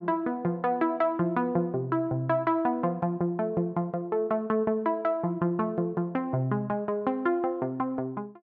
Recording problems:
none

